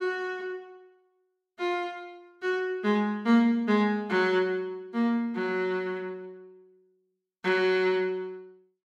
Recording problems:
none

